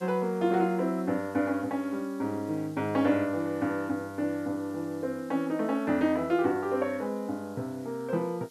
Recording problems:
background hiss; slope +3 dB per octave, SNR 27 dB

